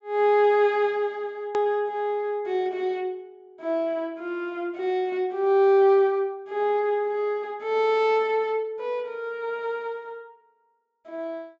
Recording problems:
treble missing; nothing above 8 kHz
hard cut with a click; at 1.5 s

